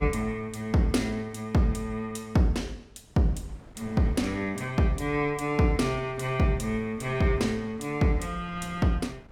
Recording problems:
wind noise; below 340 Hz, SNR 22 dB

